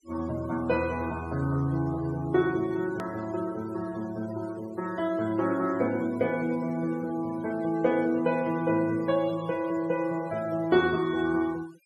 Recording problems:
noise reduction artefacts; signal-to-artefact ratio 19 dB
click at an edit; at 3 s

